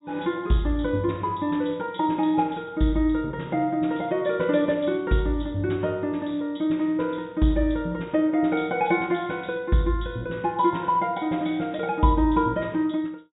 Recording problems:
low-pass filter; nothing above 4 kHz

